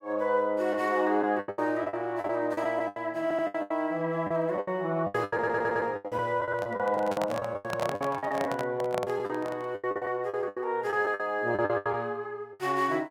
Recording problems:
packet loss; 16% of the sound replaced, filled with the last packet
audio stuttering; at 3 s and at 5.5 s
handling noise; from 6.5 to 9.5 s; peak +1 dB vs average level

